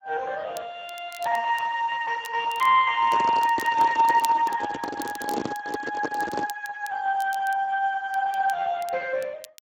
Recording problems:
codec artefacts; Speex, log-spectral distance 4 dB
crackle; vinyl, SNR 20 dB
handling noise; from 3 to 6.5 s; peak +1 dB vs average level

